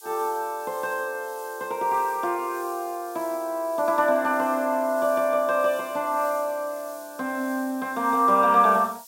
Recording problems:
background hiss; SNR 20 dB

